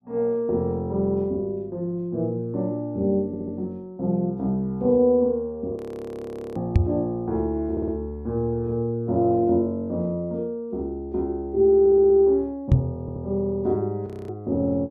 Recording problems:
audio stuttering; 4 times, first at 3.5 s
frozen audio; at 6 s for 1 s and at 14 s
knock on the microphone; at 7 s and at 13 s; peak +9 dB vs average level

